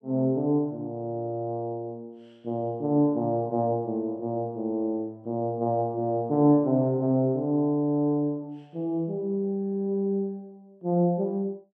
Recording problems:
none

